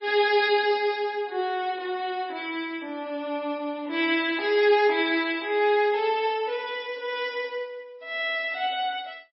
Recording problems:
lossy compression; MP3, log-spectral distance 2 dB, nothing above 5.3 kHz

